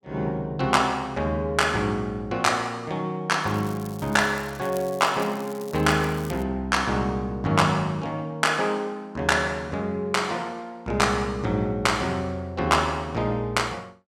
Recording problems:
crackle; from 3.5 to 6.5 s; loose cable, SNR 20 dB

